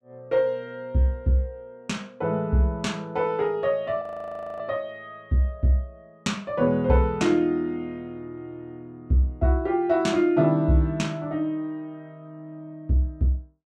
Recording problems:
frozen audio; at 4 s for 0.5 s

